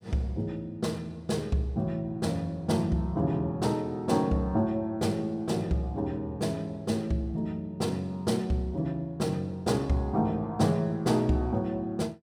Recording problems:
none

